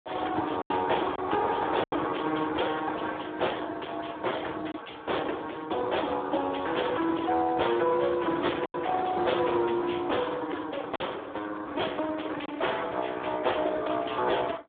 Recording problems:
phone line; 280 Hz to 3.7 kHz, Speex
distorted audio; hard clipping, signal-to-distortion ratio 9 dB
packet loss; 2% of the sound replaced, filled with silence

